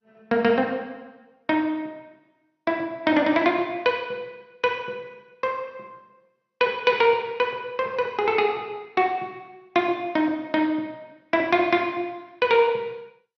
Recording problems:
lossy codec; MP2, log-spectral distance 2 dB, nothing above 5.3 kHz

